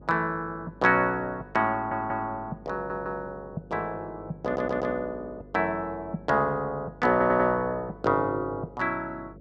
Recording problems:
electrical hum; 50 Hz, harmonics up to 550 Hz, SNR 22 dB
audio stuttering; 4 times, first at 1.5 s

